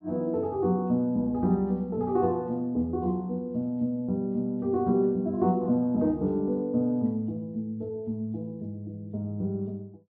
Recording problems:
treble cut off; nothing above 5.5 kHz

